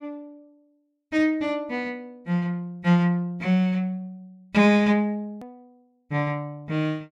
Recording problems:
edit click; at 5.5 s

